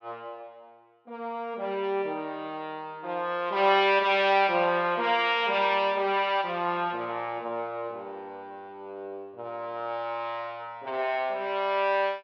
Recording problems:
none

